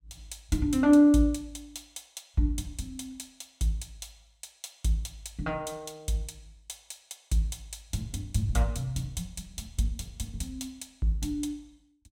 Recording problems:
none

